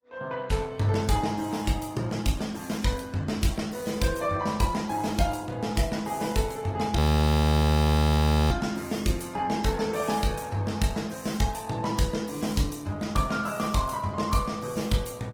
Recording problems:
lossy compression; Opus, log-spectral distance 5 dB, nothing above 19 kHz
audio freezing; at 7 s for 1.5 s

